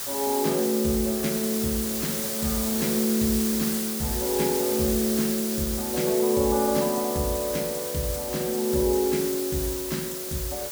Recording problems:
hiss; slope 0 dB per octave, SNR 3 dB

